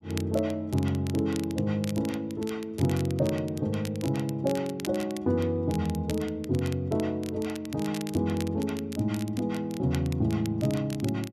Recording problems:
crackling; vinyl, SNR 16 dB

